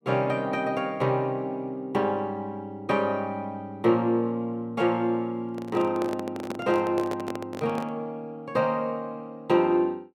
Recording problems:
microphone handling noise; from 5.5 to 8 s; peak -3 dB vs average level

